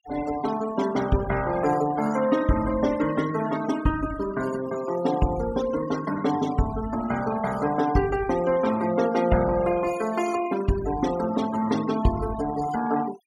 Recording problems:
noise reduction artefacts; signal-to-artefact ratio 14 dB

